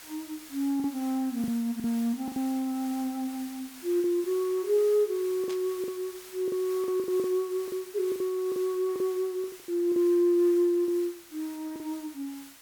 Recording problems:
hiss; slope +1 dB per octave, SNR 17 dB
packet loss; 8% of the sound replaced, filled with the last packet
burst of static; at 5.5 s; peak -11 dB vs average level

